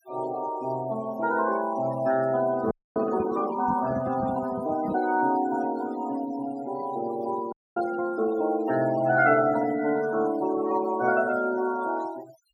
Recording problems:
denoising artefacts; signal-to-artefact ratio 16 dB
handling noise; from 2.5 to 5 s; peak -3 dB vs average level
frozen audio; at 2.5 s and at 7.5 s

